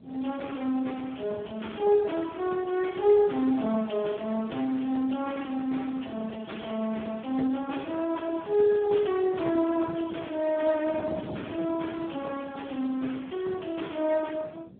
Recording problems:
telephone audio; 170 Hz to 3.6 kHz, Speex
wind noise; below 350 Hz, SNR 18 dB

